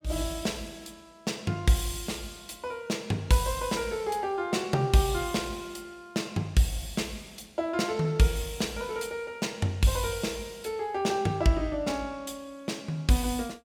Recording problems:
none

